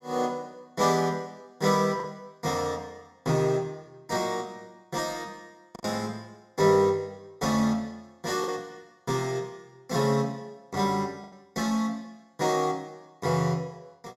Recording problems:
packet loss; 2% of the sound replaced, filled with the last packet

